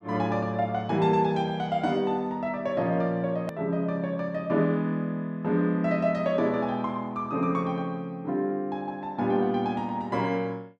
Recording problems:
click at an edit; at 3.5 s

